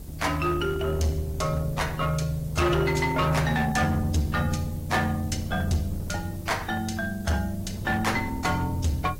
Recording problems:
lossy codec; AAC, log-spectral distance 4 dB, nothing above 15.5 kHz
distorted audio; hard clipping, uneven, signal-to-distortion ratio 11 dB
background hiss; slope +3 dB per octave, SNR 22 dB
wind on the microphone; below 190 Hz, SNR 13 dB

